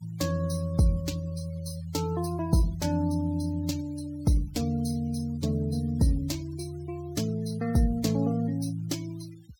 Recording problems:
denoising artefacts; signal-to-artefact ratio 20 dB

